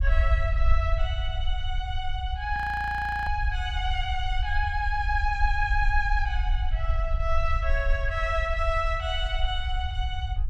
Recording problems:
low-frequency rumble; below 62 Hz, SNR 1 dB
frozen audio; at 2.5 s for 0.5 s

